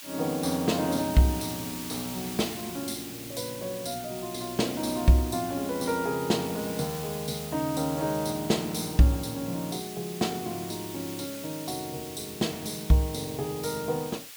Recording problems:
background hiss; slope +3 dB per octave, SNR 10 dB

